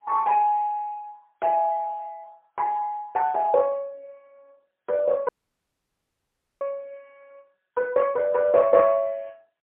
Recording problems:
telephone audio; 240 Hz to 2.2 kHz, AMR-NB, then MP3
dropout; at 5.5 s for 1.5 s

